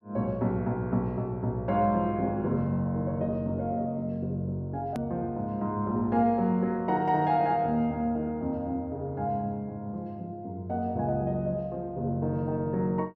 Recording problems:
click at an edit; at 5 s

